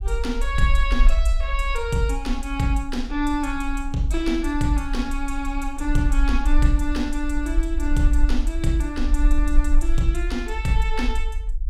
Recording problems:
rumble; below 46 Hz, strongest tone 22 Hz, SNR 1 dB

